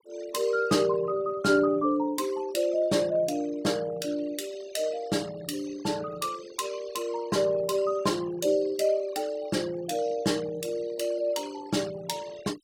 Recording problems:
denoising artefacts; signal-to-artefact ratio 20 dB

